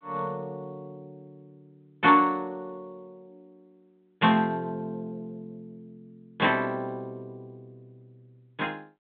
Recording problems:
telephone audio; 130 Hz to 3.7 kHz, G.726

